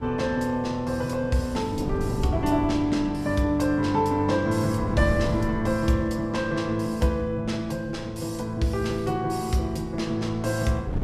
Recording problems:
wind on the microphone; below 230 Hz, SNR 11 dB

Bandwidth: 14.5 kHz